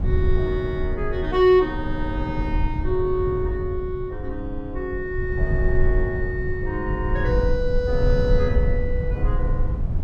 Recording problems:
low-frequency rumble; below 88 Hz, SNR 1 dB

